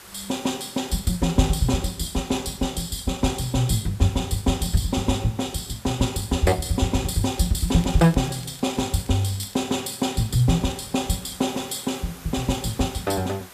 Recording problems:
background hiss; slope -2 dB per octave, SNR 21 dB
crackle; from 7 to 9.5 s; loose cable, SNR 22 dB

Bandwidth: 14.5 kHz